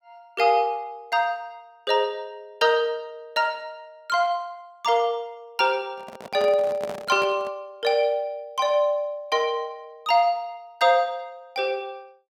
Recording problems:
handling noise; from 6 to 7.5 s; peak -7 dB vs average level

